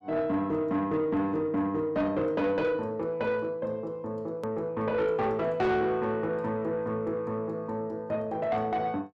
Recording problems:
distorted audio; soft clipping, signal-to-distortion ratio 12 dB
hard cut with a click; at 4.5 s

